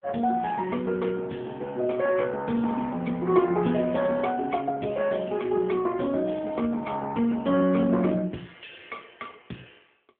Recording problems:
phone line; 130 Hz to 3.4 kHz, AMR-NB

